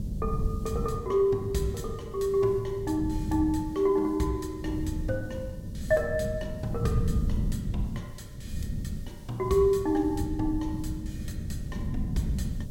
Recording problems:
hum; 50 Hz, harmonics up to 600 Hz, SNR 24 dB
hiss; SNR 29 dB
wind on the microphone; below 170 Hz, SNR 6 dB

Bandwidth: 16.5 kHz